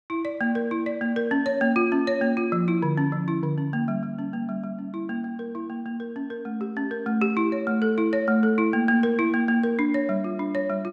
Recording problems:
none

